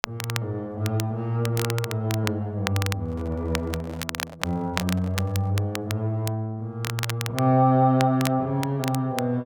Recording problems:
crackling; vinyl, SNR 9 dB
handling noise; from 3 to 5.5 s; peak -9 dB vs average level

